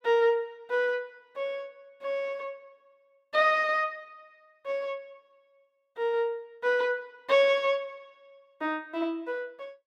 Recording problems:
none

